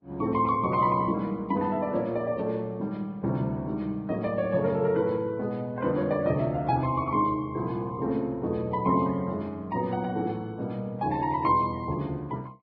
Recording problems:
lossy codec; Vorbis, log-spectral distance 2 dB

